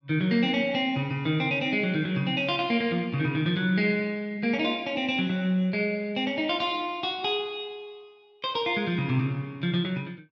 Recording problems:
none

